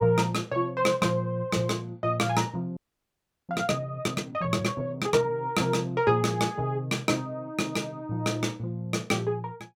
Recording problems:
frozen audio; at 3 s for 0.5 s

